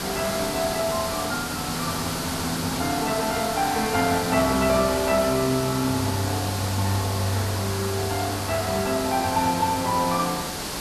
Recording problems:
background hiss; slope -2 dB per octave, SNR 5 dB

